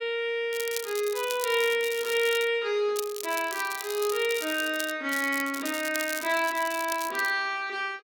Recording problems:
crackle; from 0.5 to 2.5 s, from 3 to 5 s and from 5 to 7.5 s; loose cable, SNR 10 dB

